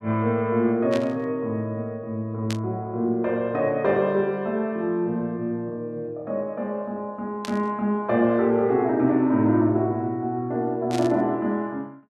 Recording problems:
burst of static; 4 times, first at 1 s; peak -5 dB vs average level

